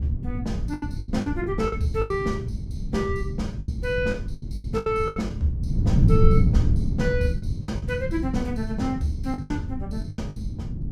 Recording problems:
wind noise; below 150 Hz, SNR -1 dB
packet loss; 10% of the sound replaced, filled with the last packet

